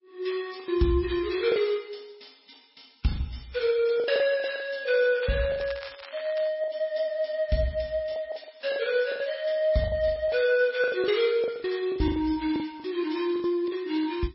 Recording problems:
lossy codec; MP3, log-spectral distance 6 dB, nothing above 5.3 kHz
lost packets; 12% of the sound replaced, filled with the last packet
crackle; from 5 to 6.5 s; loose cable, SNR 17 dB

